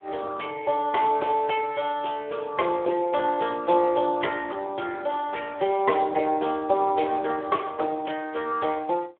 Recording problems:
phone line; 320 Hz to 3.2 kHz, Speex

